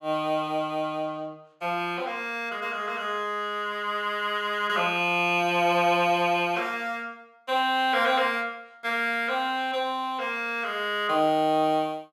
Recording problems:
none

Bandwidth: 14.5 kHz